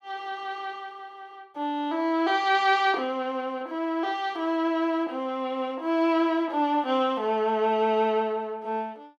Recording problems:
none

